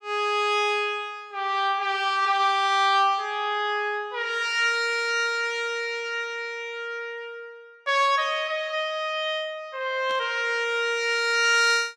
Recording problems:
static burst; at 10 s; peak -13 dB vs average level

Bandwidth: 14.5 kHz